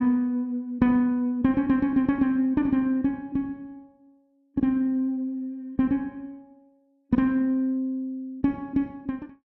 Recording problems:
none

